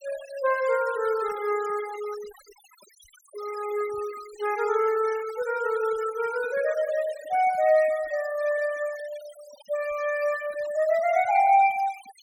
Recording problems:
noise reduction artefacts; signal-to-artefact ratio 19 dB

